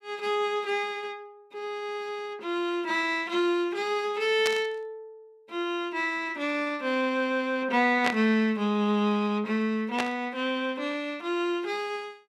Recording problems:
static burst; at 4.5 s, at 8 s and at 10 s; peak +4 dB vs average level

